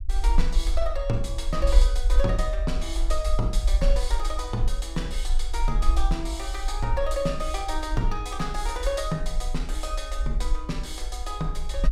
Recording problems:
low-frequency rumble; below 48 Hz, SNR -2 dB

